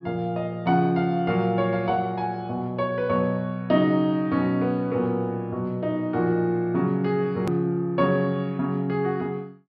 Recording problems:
treble missing; nothing above 5.5 kHz
hard cut with a click; at 7.5 s

